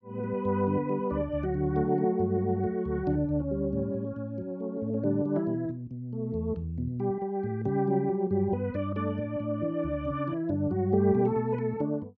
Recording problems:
treble missing; nothing above 8 kHz

